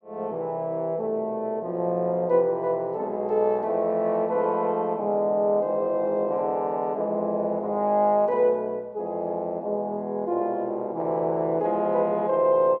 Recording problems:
none

